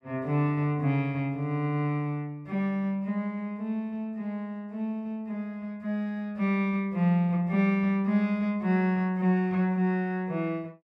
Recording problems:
none

